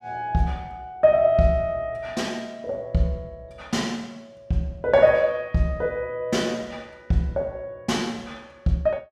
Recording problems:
none

